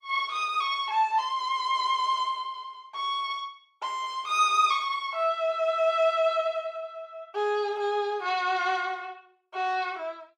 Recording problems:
lossy codec; Opus, log-spectral distance 2 dB

